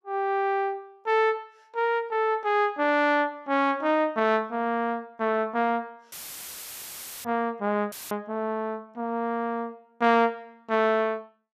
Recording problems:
dropout; at 6 s for 1 s and at 8 s; filled with static
microphone bump; at 7.5 s; peak -31 dB vs average level

